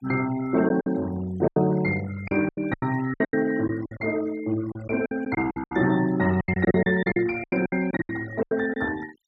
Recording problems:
denoising artefacts; signal-to-artefact ratio 18 dB
lost packets; 15% of the sound replaced, filled with silence

